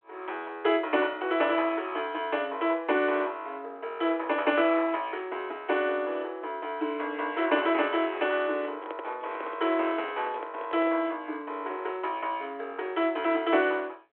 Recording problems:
telephone audio; 280 Hz to 3.4 kHz, G.726
handling noise; from 8.5 to 11 s; peak -6 dB vs average level

